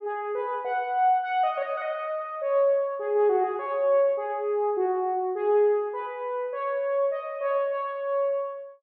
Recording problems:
none

